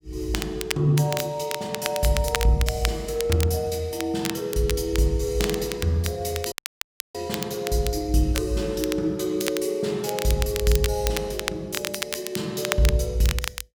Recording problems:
crackling; vinyl, SNR 7 dB
audio cutting out; at 6.5 s for 0.5 s

